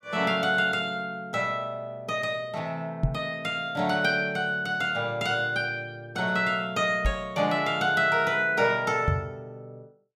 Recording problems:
knock on the microphone; at 3 s, at 7 s and at 9 s; peak +5 dB vs average level

